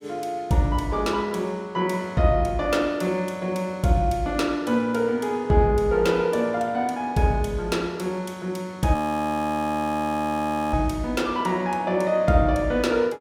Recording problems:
audio freezing; at 9 s for 2 s

